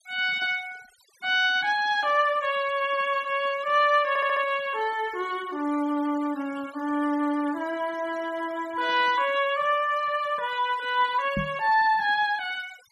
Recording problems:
denoising artefacts; signal-to-artefact ratio 21 dB
stutter; at 4 s
microphone bump; at 11 s; peak -2 dB vs average level

